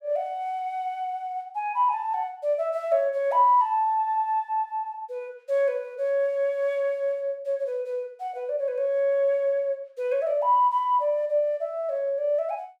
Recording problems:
none

